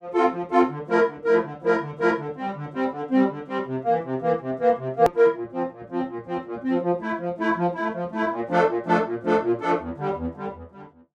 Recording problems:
click at an edit; at 5 s

